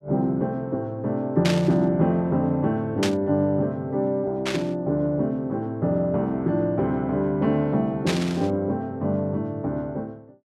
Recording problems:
static burst; 4 times, first at 1.5 s; peak +2 dB vs average level

